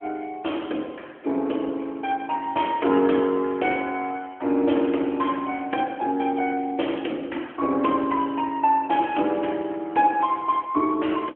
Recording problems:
telephone audio; 220 Hz to 3.3 kHz, AMR-NB

